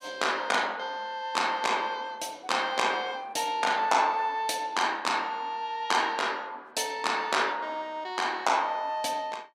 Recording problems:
none

